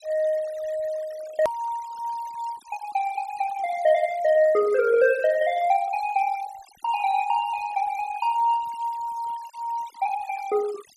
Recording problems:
noise reduction artefacts; signal-to-artefact ratio 20 dB
hard cut with a click; at 1.5 s

